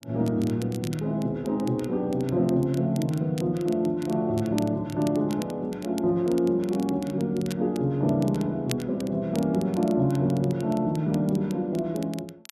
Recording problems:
crackle; vinyl, SNR 20 dB

